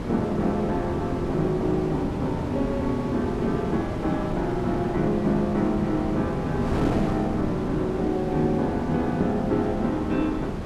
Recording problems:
wind noise; below 470 Hz, SNR 5 dB

